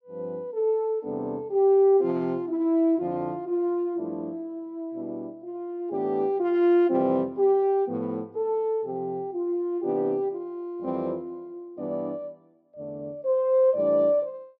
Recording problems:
none

